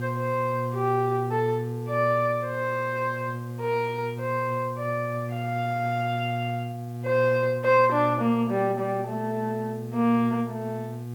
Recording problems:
hum; 60 Hz, harmonics up to 840 Hz, SNR 8 dB
hiss; slope 0 dB per octave, SNR 28 dB

